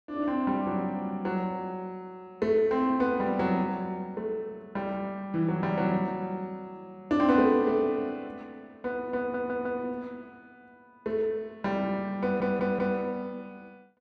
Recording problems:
stutter; at 9 s and at 12 s

